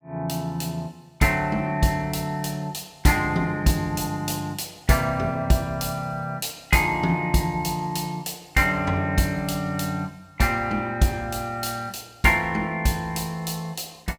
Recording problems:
none

